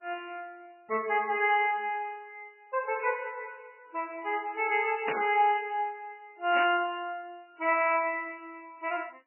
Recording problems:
lossy compression; MP3, log-spectral distance 4 dB, nothing above 2.7 kHz
burst of static; at 5 s and at 6.5 s; peak -1 dB vs average level

